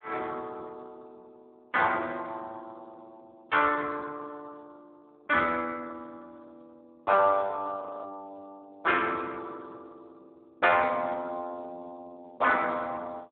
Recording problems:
telephone audio; 220 Hz to 3.5 kHz, Speex
frozen audio; at 8 s

